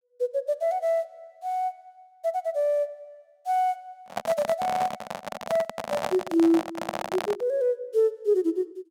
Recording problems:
handling noise; from 4 to 7.5 s; peak +2 dB vs average level

